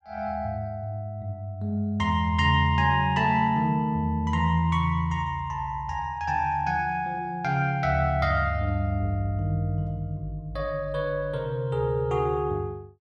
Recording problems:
none

